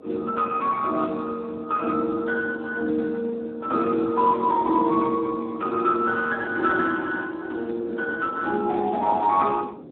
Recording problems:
phone line; 220 Hz to 3 kHz, Speex
wind on the microphone; below 440 Hz, SNR 18 dB

